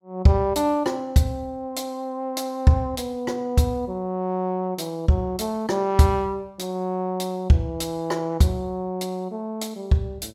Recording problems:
none

